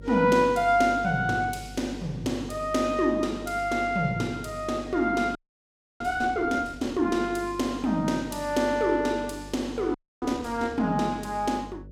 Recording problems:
hum; 50 Hz, harmonics up to 600 Hz, SNR 18 dB
audio freezing; at 5.5 s for 0.5 s and at 10 s

